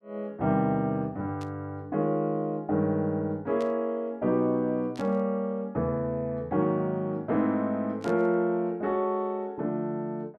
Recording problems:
static burst; 4 times, first at 1.5 s; peak -13 dB vs average level

